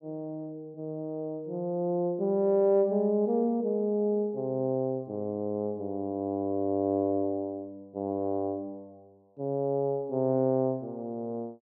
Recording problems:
none

